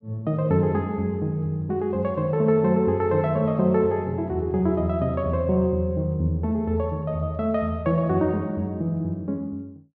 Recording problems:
treble missing; nothing above 8 kHz

